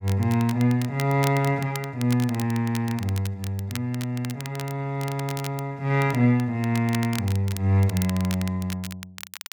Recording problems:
crackle; vinyl, SNR 14 dB

